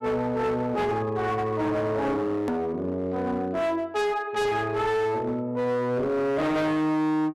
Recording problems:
distortion; hard clipping, signal-to-distortion ratio 8 dB
click at an edit; at 2.5 s

